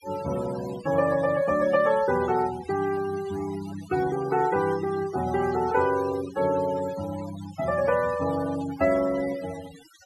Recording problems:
noise reduction artefacts; signal-to-artefact ratio 15 dB

